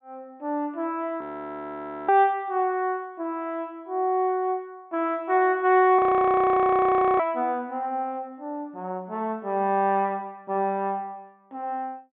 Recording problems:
treble missing; nothing above 4 kHz
frozen audio; at 1 s for 1 s and at 6 s for 1 s

